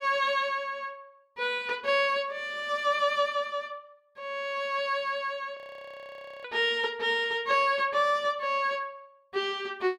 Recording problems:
audio freezing; at 5.5 s for 1 s

